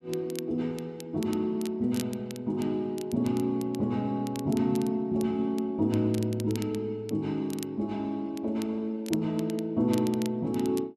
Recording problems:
crackle; vinyl, SNR 18 dB

